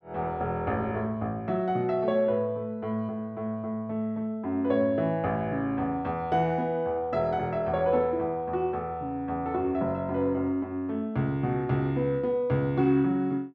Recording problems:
none

